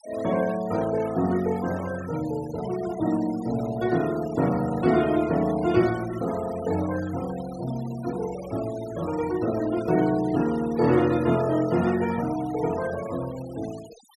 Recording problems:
denoising artefacts; signal-to-artefact ratio 18 dB

